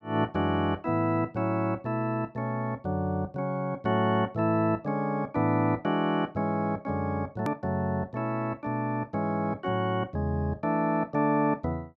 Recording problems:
hard cut with a click; at 7.5 s

